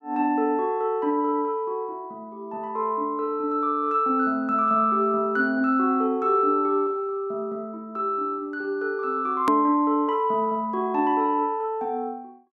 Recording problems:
hard cut with a click; at 9.5 s

